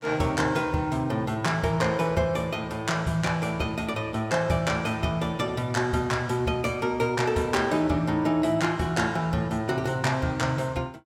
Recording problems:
none

